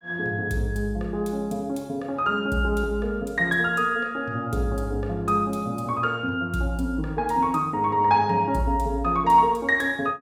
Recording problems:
none

